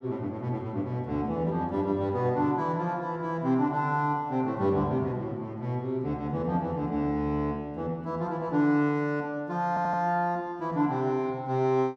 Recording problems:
audio stuttering; at 9.5 s

